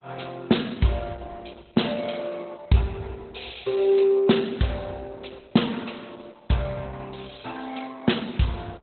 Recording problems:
codec artefacts; Opus, log-spectral distance 9 dB, nothing above 4 kHz

